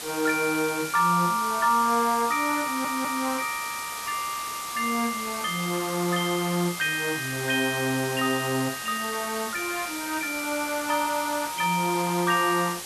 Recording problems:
background hiss; slope 0 dB per octave, SNR 8 dB
stutter; at 2.5 s

